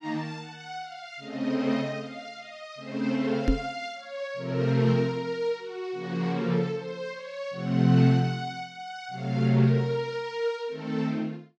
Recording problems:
knock on the microphone; at 3.5 s; peak +7 dB vs average level

